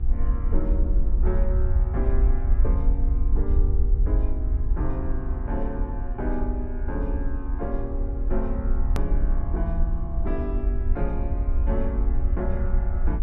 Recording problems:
hum; 60 Hz, harmonics up to 1.2 kHz, SNR 10 dB
low-frequency rumble; below 58 Hz, SNR -7 dB
hard cut with a click; at 9 s

